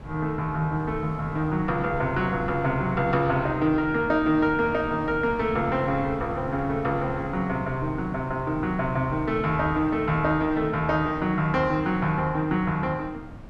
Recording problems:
wind on the microphone; below 250 Hz, SNR 14 dB

